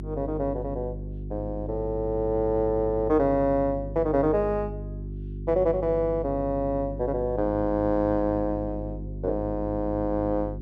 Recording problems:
hum; 50 Hz, harmonics up to 400 Hz, SNR 9 dB

